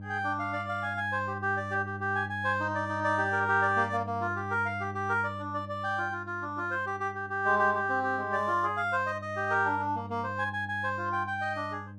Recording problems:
electrical hum; 50 Hz, harmonics up to 600 Hz, SNR 13 dB

